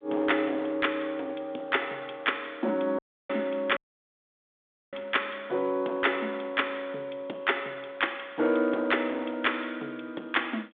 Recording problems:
phone line; 220 Hz to 3.6 kHz, G.726
distorted audio; hard clipping, uneven, signal-to-distortion ratio 14 dB
dropout; at 3 s and at 4 s for 1 s

